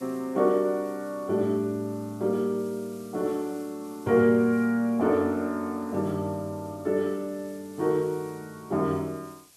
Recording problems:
background hiss; SNR 26 dB

